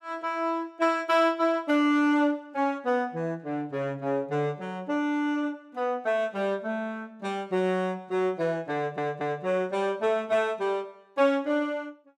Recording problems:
audio stuttering; at 9 s

